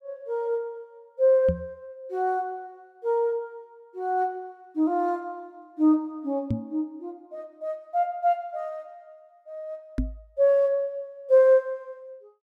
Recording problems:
microphone bump; at 1.5 s, at 6.5 s and at 10 s; peak +2 dB vs average level

